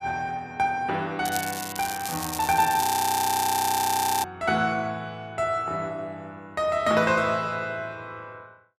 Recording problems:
crackling; from 1.5 to 3 s; loose cable, SNR 5 dB
frozen audio; at 3 s for 1.5 s

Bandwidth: 14.5 kHz